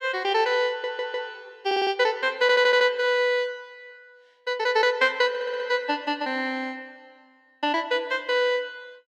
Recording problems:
audio stuttering; 4 times, first at 0.5 s

